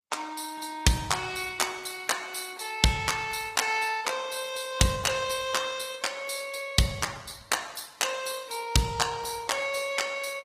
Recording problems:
lossy codec; Opus, log-spectral distance 6 dB, nothing above 15.1 kHz

